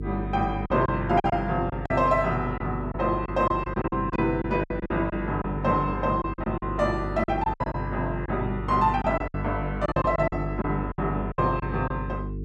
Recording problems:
hum; 50 Hz, harmonics up to 450 Hz, SNR 7 dB
packet loss; 11% of the sound replaced, filled with silence

